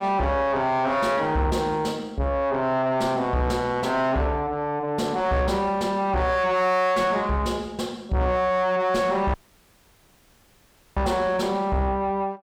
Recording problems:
distorted audio; soft clipping, signal-to-distortion ratio 7 dB
dropout; at 9.5 s for 1.5 s

